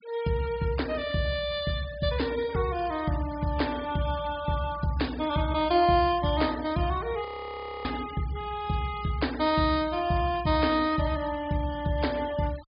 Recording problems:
treble cut off; nothing above 5.1 kHz
denoising artefacts; signal-to-artefact ratio 19 dB
audio freezing; at 7.5 s for 0.5 s

